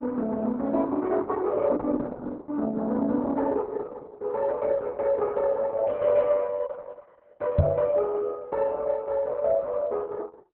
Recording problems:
lossy compression; Opus, log-spectral distance 3 dB, nothing above 4 kHz
microphone bump; at 7.5 s; peak +9 dB vs average level

